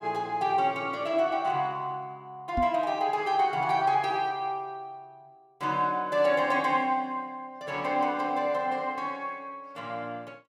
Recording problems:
microphone thump; at 2.5 s; peak 0 dB vs average level

